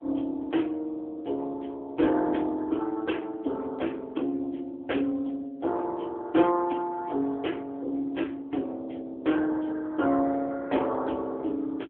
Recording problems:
phone line; 240 Hz to 3.4 kHz, AMR-NB

